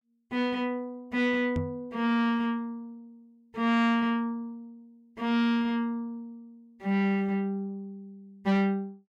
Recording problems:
distortion; soft clipping, signal-to-distortion ratio 11 dB
knock on the microphone; at 1.5 s; peak +1 dB vs average level

